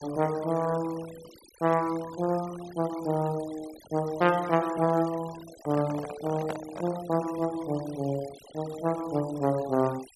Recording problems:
noise reduction artefacts; signal-to-artefact ratio 18 dB
microphone handling noise; from 5.5 to 7 s; peak -2 dB vs average level

